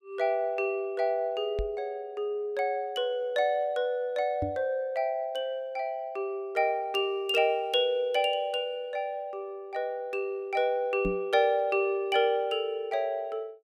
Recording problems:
microphone thump; at 1.5 s, at 4.5 s and at 11 s; peak 0 dB vs average level

